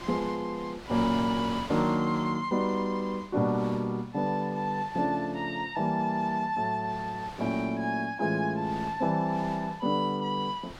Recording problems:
wind noise; below 2.6 kHz, SNR 17 dB

